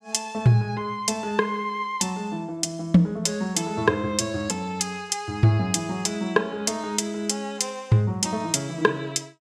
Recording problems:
none

